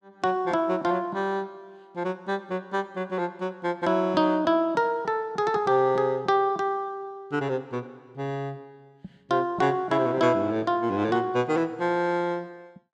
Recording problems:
none

